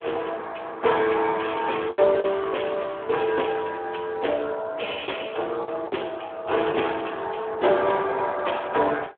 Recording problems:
phone line; 300 Hz to 3.4 kHz, Speex
packet loss; 3% of the sound replaced, filled with the last packet

